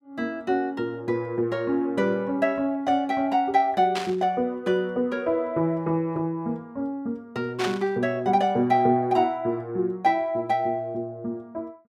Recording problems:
burst of static; at 4 s and at 7.5 s; peak -1 dB vs average level

